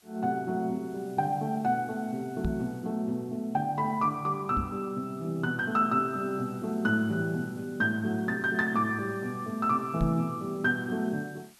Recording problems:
hiss; slope +1 dB per octave, SNR 27 dB
microphone bump; at 2.5 s, at 4.5 s and at 10 s; peak +2 dB vs average level

